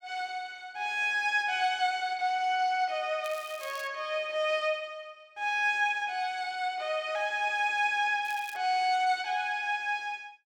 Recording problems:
crackle; at 3 s and at 8.5 s; loose cable, SNR 20 dB

